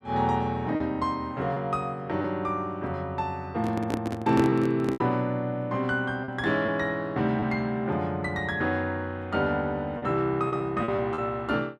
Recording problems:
lost packets; 4% of the sound replaced, filled with repeated pitch periods
microphone handling noise; from 3.5 to 5 s; peak +2 dB vs average level

